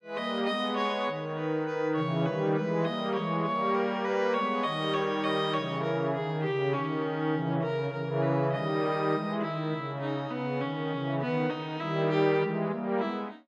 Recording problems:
none

